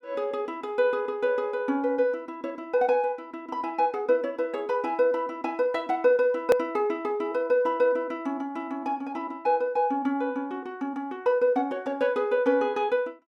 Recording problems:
edit click; at 6.5 s

